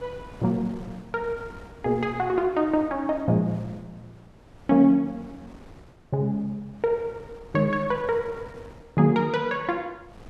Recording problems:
wind on the microphone; below 590 Hz, SNR 22 dB

